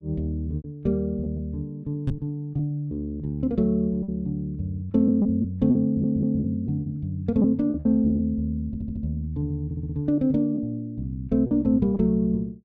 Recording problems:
lost packets; 7% of the sound replaced, filled with repeated pitch periods
microphone bump; at 2 s; peak +4 dB vs average level
stutter; at 6 s, at 8.5 s and at 9.5 s

